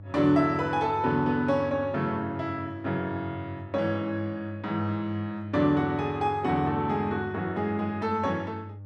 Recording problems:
hum; 50 Hz, harmonics up to 600 Hz, SNR 15 dB

